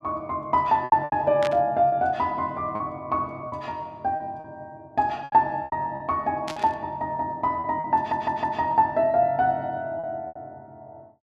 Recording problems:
lost packets; 8% of the sound replaced, filled with repeated pitch periods
static burst; at 1.5 s and at 6.5 s; peak -4 dB vs average level
audio stuttering; at 8 s

